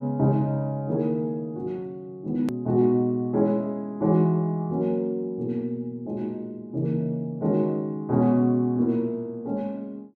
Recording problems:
edit click; at 2.5 s

